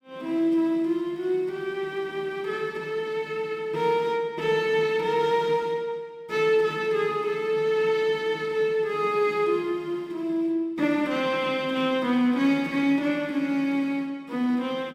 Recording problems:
none

